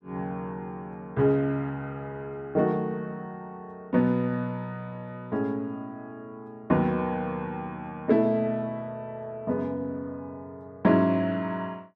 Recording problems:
none

